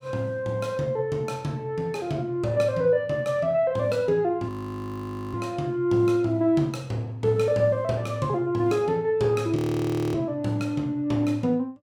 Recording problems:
audio freezing; at 4.5 s for 1 s and at 9.5 s for 0.5 s

